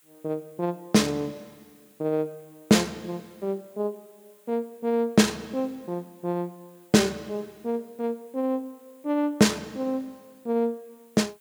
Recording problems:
background hiss; SNR 30 dB

